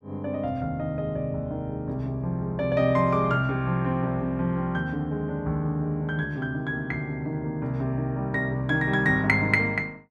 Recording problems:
none

